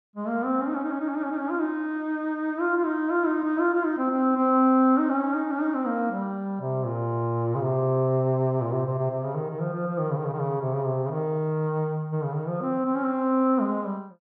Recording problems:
none

